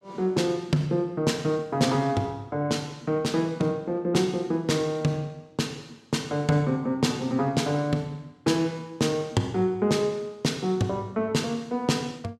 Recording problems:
none

